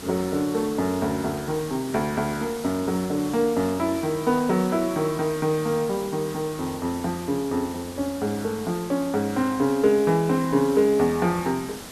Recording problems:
hiss; slope -3 dB per octave, SNR 14 dB

